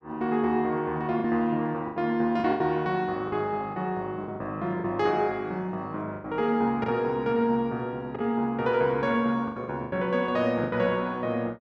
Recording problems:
lost packets; 8% of the sound replaced, filled with the last packet

